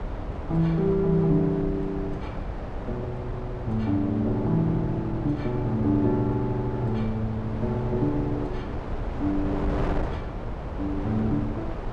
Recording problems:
wind on the microphone; below 470 Hz, SNR 7 dB

